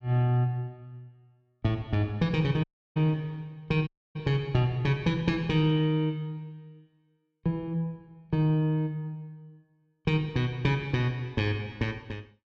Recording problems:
dropout; at 2.5 s and at 4 s

